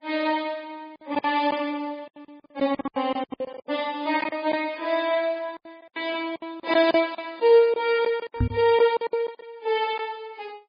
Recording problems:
codec artefacts; MP3, log-spectral distance 2 dB, nothing above 4.6 kHz
lost packets; 13% of the sound replaced, filled with silence
microphone thump; at 8.5 s; peak +4 dB vs average level

